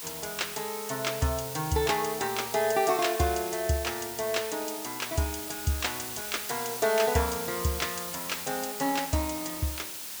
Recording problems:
background hiss; slope +1 dB per octave, SNR 6 dB

